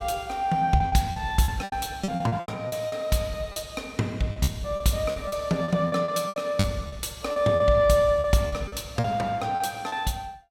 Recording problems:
lost packets; 13% of the sound replaced, filled with repeated pitch periods

